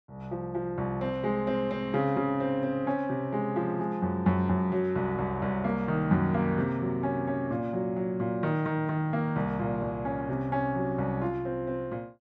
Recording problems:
none

